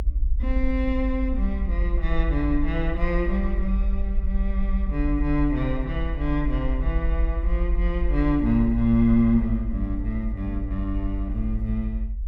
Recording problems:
low-frequency rumble; below 56 Hz, strongest tone 46 Hz, SNR 1 dB

